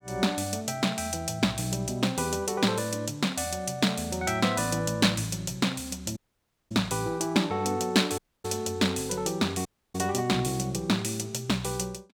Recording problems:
dropout; at 6 s for 0.5 s, at 8 s and at 9.5 s

